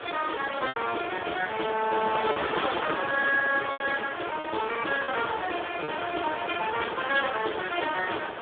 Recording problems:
telephone audio; 240 Hz to 3.5 kHz, Speex
wind noise; below 1.7 kHz, SNR 6 dB
lost packets; 4% of the sound replaced, filled with repeated pitch periods

